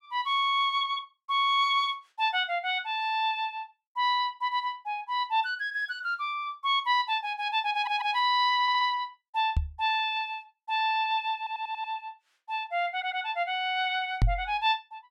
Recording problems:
stutter; 4 times, first at 7.5 s
microphone thump; at 9.5 s and at 14 s; peak +6 dB vs average level

